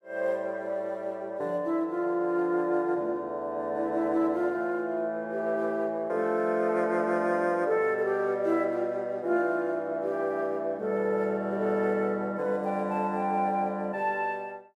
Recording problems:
none

